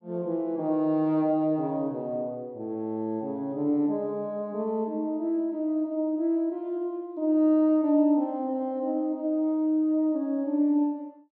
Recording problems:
none

